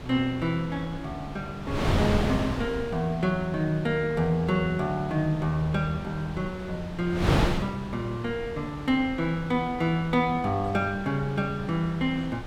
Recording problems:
wind noise; below 750 Hz, SNR 6 dB

